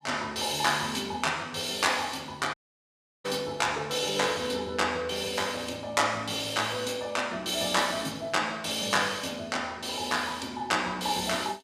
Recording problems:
audio cutting out; at 2.5 s for 0.5 s

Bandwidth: 15 kHz